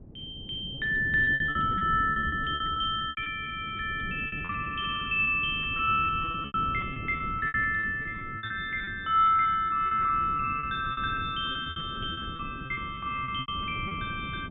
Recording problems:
low-pass filter; nothing above 4 kHz
wind on the microphone; below 260 Hz, SNR 13 dB
lost packets; 18% of the sound replaced, filled with repeated pitch periods

